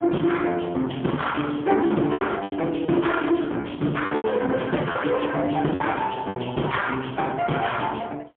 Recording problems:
telephone audio; 110 Hz to 3.4 kHz, AMR-NB, then MP3
distorted audio; soft clipping, signal-to-distortion ratio 10 dB
packet loss; 7% of the sound replaced, filled with repeated pitch periods

